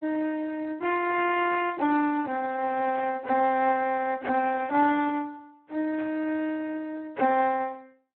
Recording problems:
phone line; 260 Hz to 2.9 kHz, Speex
static burst; at 1.5 s, at 3 s and at 6 s; peak -13 dB vs average level

